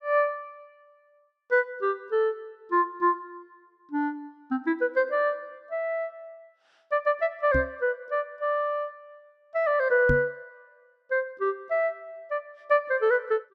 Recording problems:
microphone bump; at 7.5 s and at 10 s; peak +3 dB vs average level

